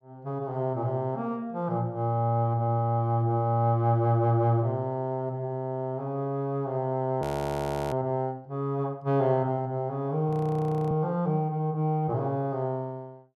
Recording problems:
audio freezing; at 7 s for 0.5 s and at 10 s for 0.5 s

